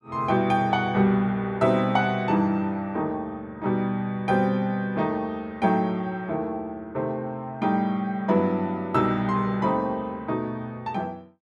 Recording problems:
none

